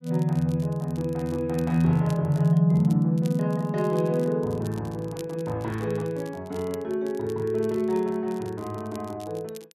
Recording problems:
crackle; vinyl, SNR 25 dB

